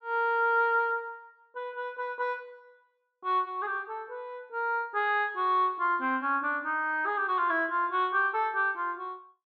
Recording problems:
treble cut off; nothing above 8 kHz

